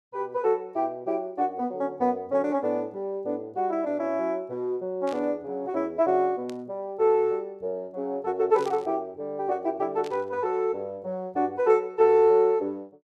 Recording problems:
burst of static; 4 times, first at 5 s; peak -13 dB vs average level

